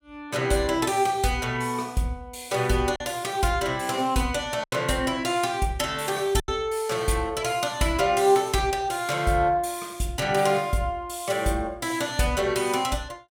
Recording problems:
lost packets; 1.5% of the sound replaced, filled with silence

